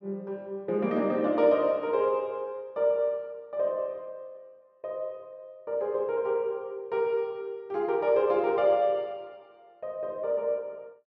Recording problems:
none

